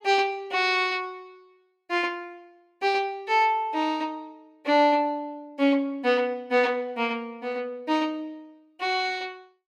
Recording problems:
none

